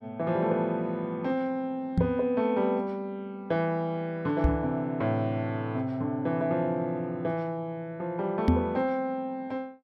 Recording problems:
microphone bump; at 2 s, at 4.5 s and at 8.5 s; peak +10 dB vs average level

